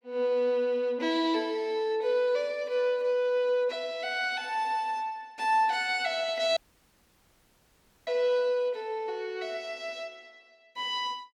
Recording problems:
dropout; at 6.5 s for 1.5 s

